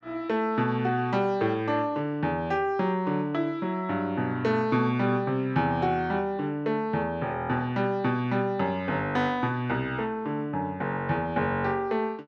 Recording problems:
none

